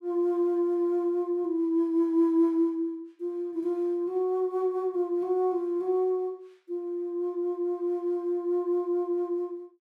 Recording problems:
none

